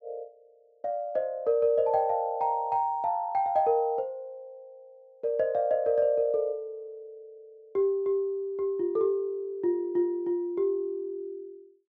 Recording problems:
treble missing; nothing above 7.9 kHz

